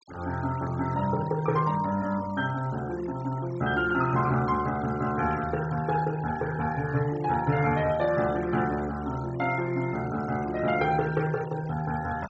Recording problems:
treble cut off; nothing above 8 kHz
noise reduction artefacts; signal-to-artefact ratio 18 dB

